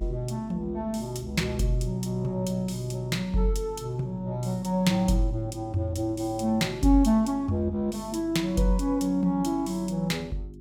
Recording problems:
electrical hum; 50 Hz, harmonics up to 400 Hz, SNR 17 dB

